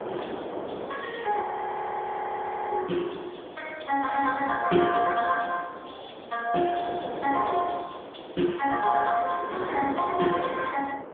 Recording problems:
phone line; 220 Hz to 3.4 kHz, AMR-NB
wind on the microphone; below 810 Hz, SNR 10 dB
frozen audio; at 1.5 s for 1.5 s

